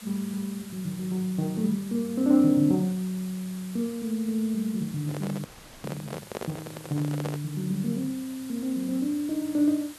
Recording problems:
background hiss; slope -1 dB per octave, SNR 18 dB
microphone handling noise; from 5 to 7.5 s; peak -3 dB vs average level
audio freezing; at 5.5 s

